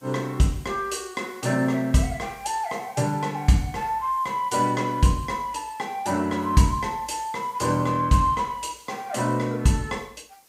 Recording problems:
hiss; SNR 28 dB

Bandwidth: 15.5 kHz